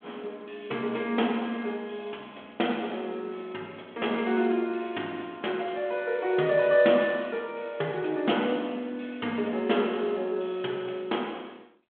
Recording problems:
phone line; 220 Hz to 3.4 kHz, G.726

